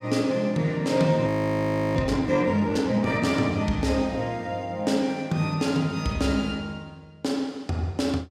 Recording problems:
frozen audio; at 1.5 s for 0.5 s

